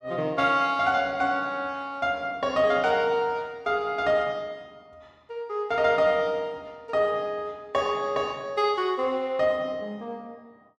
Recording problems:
none

